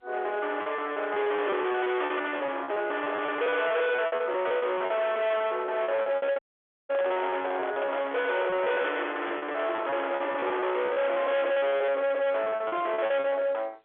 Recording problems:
phone line; 370 Hz to 3.6 kHz, G.711
distorted audio; hard clipping, signal-to-distortion ratio 7 dB
lost packets; 17% of the sound replaced, filled with repeated pitch periods
handling noise; from 6 to 11 s; peak -3 dB vs average level
audio cutting out; at 6.5 s for 0.5 s

